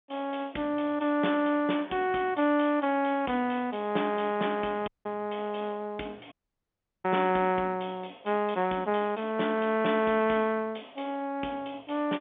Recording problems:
phone line; 170 Hz to 3.5 kHz, G.711
audio cutting out; at 5 s and at 6.5 s for 0.5 s

